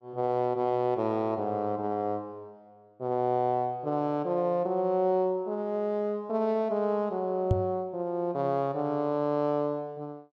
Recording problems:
microphone bump; at 7.5 s; peak +7 dB vs average level

